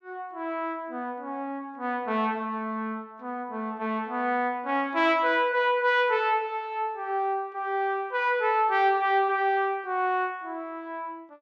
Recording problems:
none

